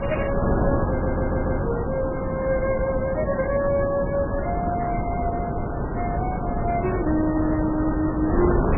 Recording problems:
lossy compression; MP3, log-spectral distance 4 dB, nothing above 2.8 kHz
electrical hum; 50 Hz, harmonics up to 400 Hz, SNR 17 dB
wind on the microphone; below 510 Hz, SNR 0 dB
audio stuttering; at 1 s

